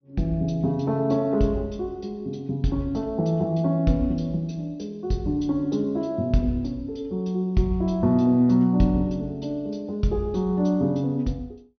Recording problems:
treble missing; nothing above 6.2 kHz

